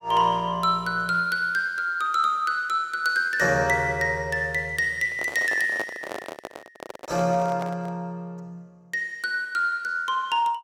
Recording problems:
microphone handling noise; from 5 to 8 s; peak -3 dB vs average level

